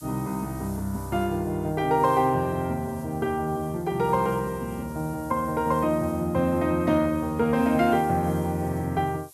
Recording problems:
hiss; SNR 23 dB

